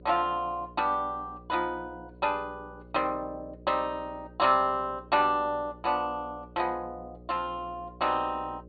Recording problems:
treble cut off; nothing above 4.6 kHz
electrical hum; 60 Hz, harmonics up to 600 Hz, SNR 21 dB

